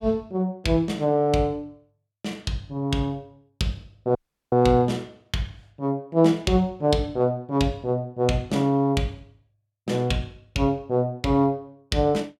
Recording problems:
dropout; at 4 s

